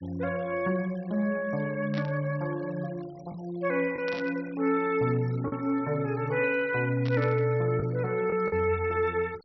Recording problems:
treble missing; nothing above 5.7 kHz
noise reduction artefacts; signal-to-artefact ratio 23 dB
packet loss; 1.7% of the sound replaced, filled with the last packet
static burst; at 2 s, at 4 s and at 7 s; peak -8 dB vs average level

